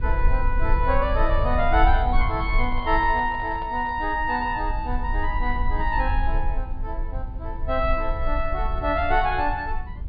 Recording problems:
low-pass filter; nothing above 4.9 kHz
rumble; below 52 Hz, strongest tone 18 Hz, SNR 4 dB
handling noise; from 2.5 to 4 s; peak -13 dB vs average level

